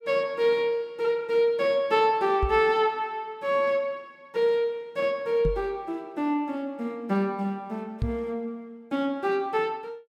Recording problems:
knock on the microphone; at 2.5 s, at 5.5 s and at 8 s; peak +2 dB vs average level

